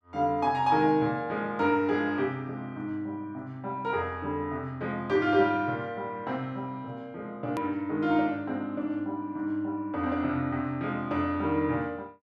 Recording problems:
edit click; at 7.5 s

